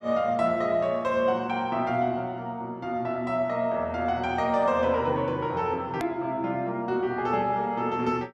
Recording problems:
hard cut with a click; at 6 s

